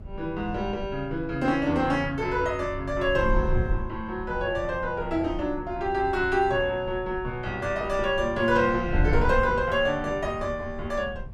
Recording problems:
wind noise; below 92 Hz, SNR 9 dB

